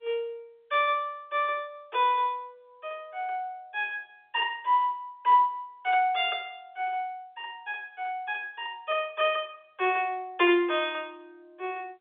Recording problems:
phone line; 300 Hz to 3.6 kHz, G.711

